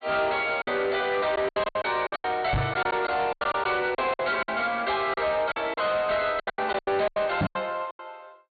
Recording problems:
treble cut off; nothing above 4.5 kHz
distorted audio; soft clipping, signal-to-distortion ratio 10 dB
lost packets; 15% of the sound replaced, filled with silence
knock on the microphone; at 2.5 s and at 7.5 s; peak +4 dB vs average level

